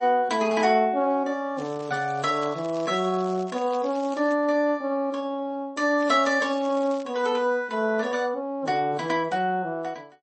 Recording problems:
lossy codec; MP3, then MP3, log-spectral distance 2 dB, nothing above 8 kHz
crackle; from 1.5 to 4.5 s and from 6 to 7 s; loose cable, SNR 24 dB

